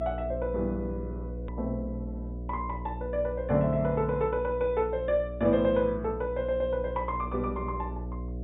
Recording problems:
treble missing; nothing above 4 kHz
electrical hum; 60 Hz, harmonics up to 660 Hz, SNR 9 dB
click at an edit; at 1.5 s

